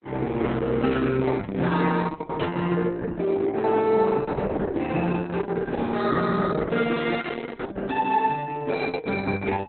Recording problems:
codec artefacts; Opus, log-spectral distance 4 dB, nothing above 4.1 kHz

